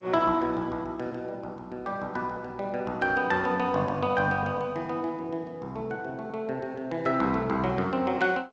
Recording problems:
lossy codec; Opus, then G.722, log-spectral distance 2 dB, nothing above 8 kHz

